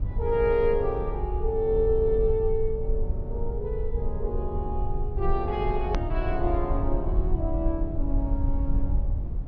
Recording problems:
low-pass filter; nothing above 6.3 kHz
rumble; below 64 Hz, SNR 2 dB
click at an edit; at 6 s

